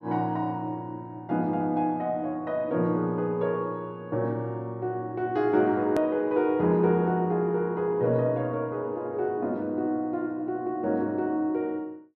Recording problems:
hard cut with a click; at 6 s

